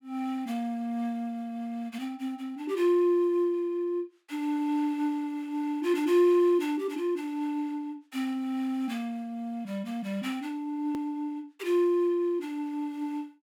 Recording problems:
edit click; at 11 s

